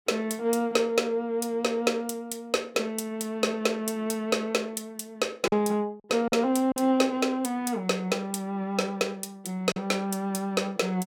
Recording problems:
packet loss; 1.7% of the sound replaced, filled with silence

